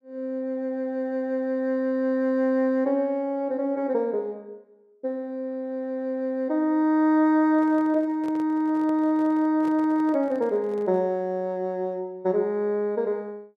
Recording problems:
microphone handling noise; from 7.5 to 11 s; peak -13 dB vs average level

